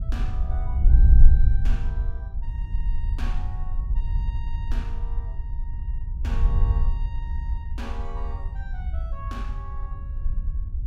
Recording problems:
wind noise; below 58 Hz, SNR -15 dB

